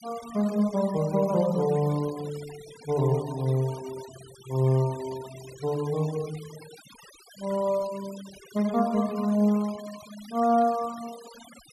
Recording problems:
denoising artefacts; signal-to-artefact ratio 19 dB

